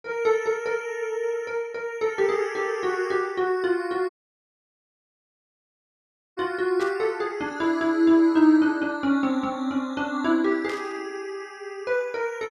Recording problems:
dropout; at 4 s for 2.5 s
static burst; at 7 s and at 11 s; peak -11 dB vs average level

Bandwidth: 14.5 kHz